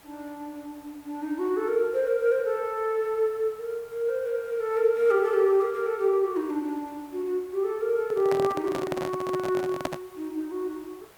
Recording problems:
hiss; SNR 26 dB
handling noise; from 8 to 10 s; peak +1 dB vs average level

